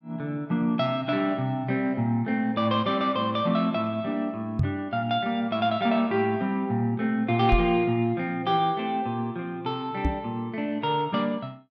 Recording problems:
microphone thump; at 4.5 s, at 7.5 s and at 10 s; peak +5 dB vs average level

